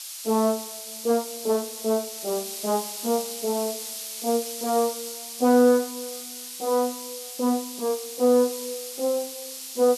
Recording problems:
hiss; SNR 8 dB

